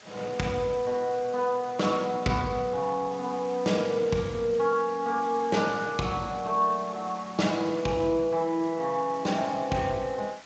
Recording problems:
codec artefacts; Speex, log-spectral distance 5 dB, nothing above 7.3 kHz
hiss; slope -1 dB per octave, SNR 20 dB

